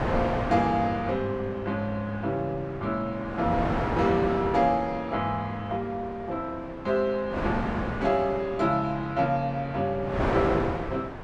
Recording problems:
wind noise; below 1 kHz, SNR 6 dB

